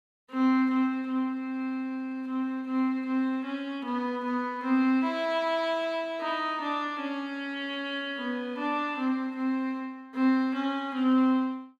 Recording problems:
none

